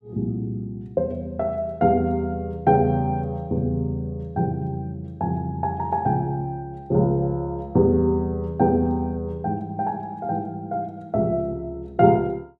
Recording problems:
none

